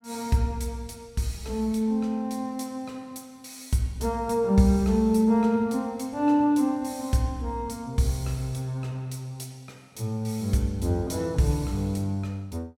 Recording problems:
none

